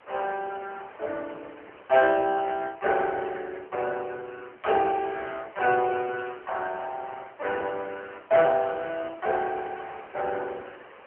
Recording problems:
telephone audio; 340 Hz to 2.6 kHz, AMR-NB
wind on the microphone; below 1.9 kHz, SNR 22 dB

